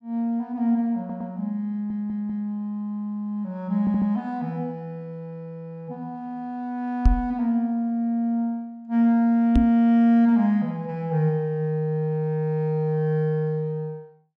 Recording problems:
stutter; at 1 s, at 1.5 s and at 4 s
microphone thump; at 7 s and at 9.5 s; peak +8 dB vs average level

